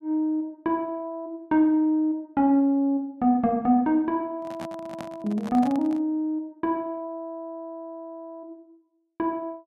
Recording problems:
microphone handling noise; from 4.5 to 6 s; peak -8 dB vs average level

